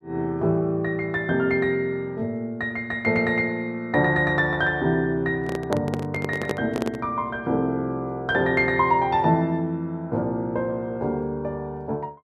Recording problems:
microphone handling noise; from 5.5 to 7 s; peak +1 dB vs average level

